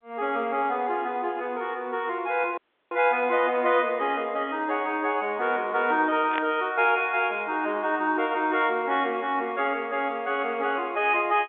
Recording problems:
telephone audio; 260 Hz to 3.7 kHz, G.711
dropout; at 2.5 s
static burst; at 6.5 s; peak -1 dB vs average level

